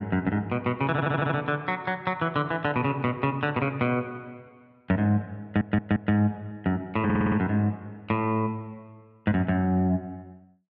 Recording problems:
audio stuttering; at 1 s, at 5.5 s and at 7 s

